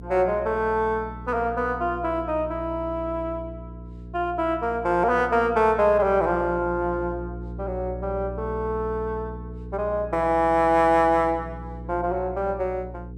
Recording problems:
hum; 60 Hz, harmonics up to 480 Hz, SNR 13 dB

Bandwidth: 14.5 kHz